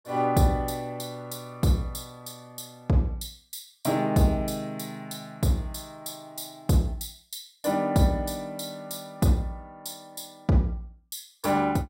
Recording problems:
none

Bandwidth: 16 kHz